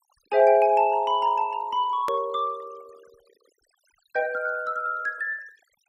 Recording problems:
noise reduction artefacts; signal-to-artefact ratio 26 dB
click at an edit; at 2 s

